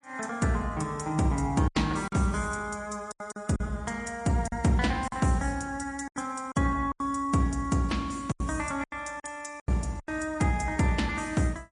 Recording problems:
lossy codec; MP3, log-spectral distance 3 dB
lost packets; 8% of the sound replaced, filled with silence

